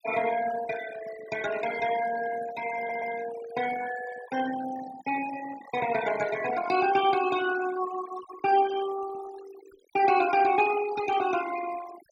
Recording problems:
denoising artefacts; signal-to-artefact ratio 12 dB
stutter; at 3 s

